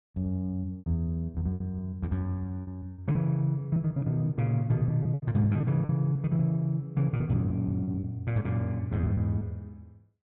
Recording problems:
treble cut off; nothing above 3.9 kHz
lost packets; 10% of the sound replaced, filled with repeated pitch periods

